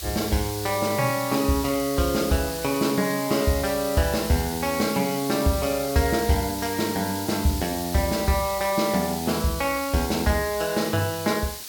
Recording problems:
hiss; SNR 8 dB

